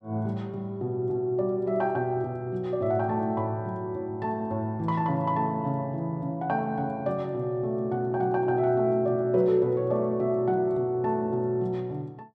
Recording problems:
none

